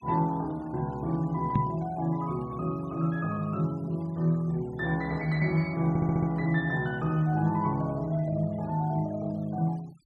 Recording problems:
noise reduction artefacts; signal-to-artefact ratio 26 dB
microphone bump; at 1.5 s; peak +6 dB vs average level
audio stuttering; at 6 s

